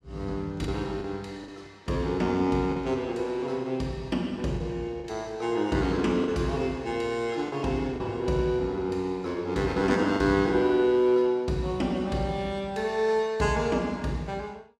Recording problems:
lost packets; 3% of the sound replaced, filled with the last packet

